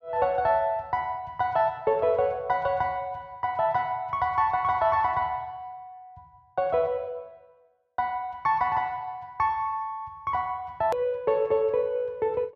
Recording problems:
edit click; at 11 s

